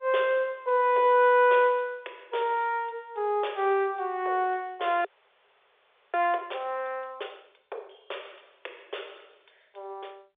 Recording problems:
phone line; 370 Hz to 3.6 kHz, G.711
audio freezing; at 5 s for 1 s

